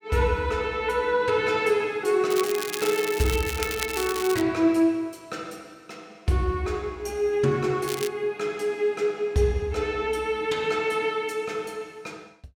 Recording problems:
crackle; from 2.5 to 4.5 s and at 8 s; loose cable, SNR 8 dB

